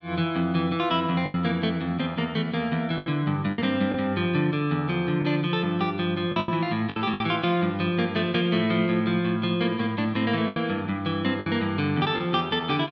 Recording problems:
lost packets; 5% of the sound replaced, filled with the last packet

